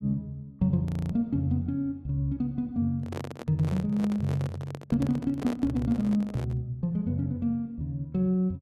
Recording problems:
frozen audio; at 1 s
handling noise; from 3 to 6.5 s; peak -4 dB vs average level

